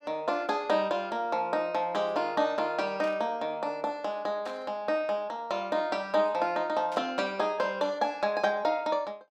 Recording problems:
burst of static; at 3 s, at 4.5 s and at 7 s; peak -13 dB vs average level

